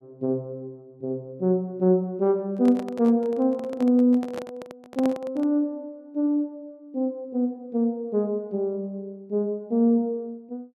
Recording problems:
handling noise; from 2.5 to 5.5 s; peak -5 dB vs average level

